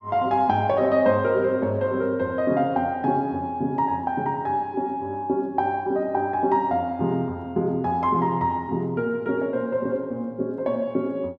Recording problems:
none

